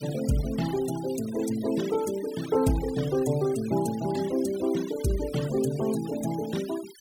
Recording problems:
denoising artefacts; signal-to-artefact ratio 16 dB

